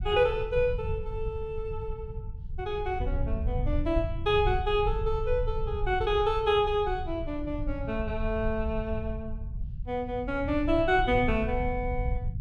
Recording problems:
rumble; below 88 Hz, SNR 6 dB

